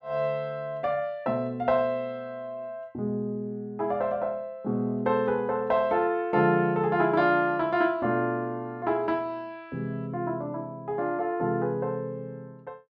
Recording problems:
none

